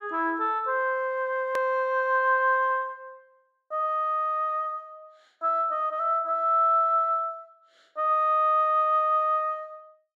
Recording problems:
edit click; at 1.5 s

